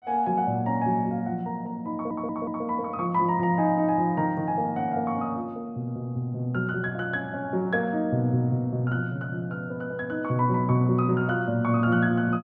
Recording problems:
stutter; at 2 s

